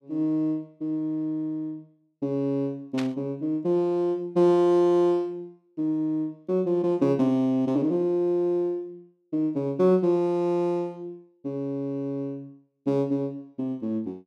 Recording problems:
static burst; at 3 s; peak -6 dB vs average level

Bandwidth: 14 kHz